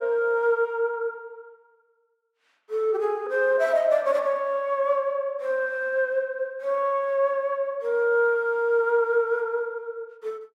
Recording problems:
none

